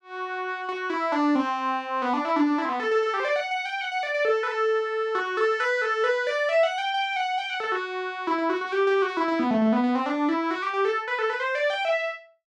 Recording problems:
none

